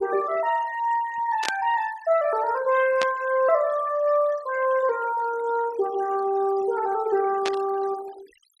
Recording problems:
noise reduction artefacts; signal-to-artefact ratio 19 dB
burst of static; at 1.5 s, at 3 s and at 7.5 s; peak 0 dB vs average level

